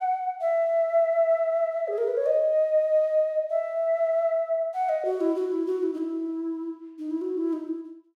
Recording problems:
none

